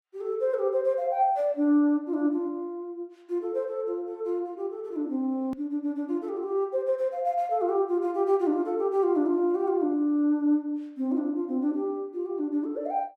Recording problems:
edit click; at 5.5 s

